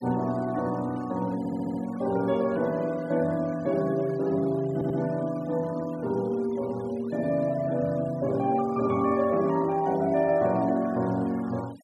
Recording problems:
denoising artefacts; signal-to-artefact ratio 23 dB
audio stuttering; at 1.5 s and at 4.5 s

